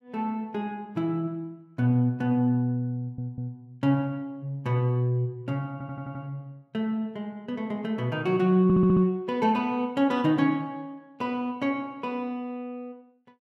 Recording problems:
stutter; at 3 s, at 5.5 s and at 8.5 s

